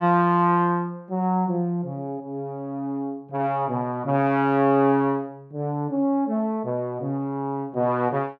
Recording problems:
none

